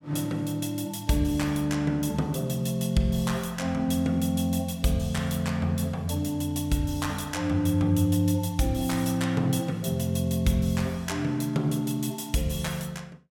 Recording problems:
none

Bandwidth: 17.5 kHz